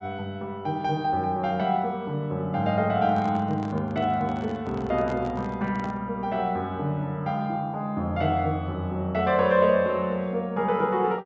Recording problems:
treble cut off; nothing above 8 kHz
handling noise; from 3 to 6 s; peak -9 dB vs average level

